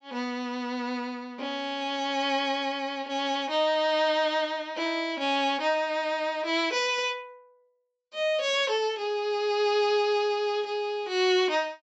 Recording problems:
treble cut off; nothing above 7.8 kHz

